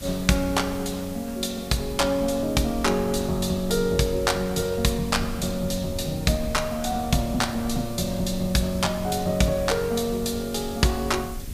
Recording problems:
hiss; slope +3 dB per octave, SNR 18 dB
wind on the microphone; below 140 Hz, SNR 14 dB

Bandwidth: 15 kHz